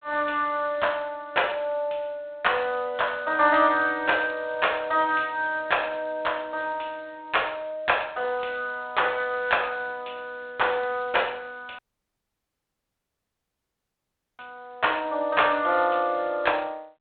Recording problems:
telephone audio; 320 Hz to 3.7 kHz, G.726
dropout; at 12 s for 2.5 s

